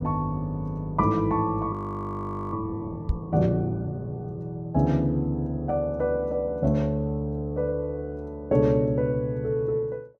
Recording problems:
audio freezing; at 1.5 s for 1 s
microphone thump; at 3 s; peak +4 dB vs average level

